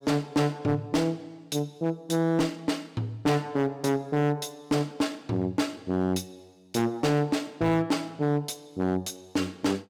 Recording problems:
distortion; hard clipping, signal-to-distortion ratio 8 dB

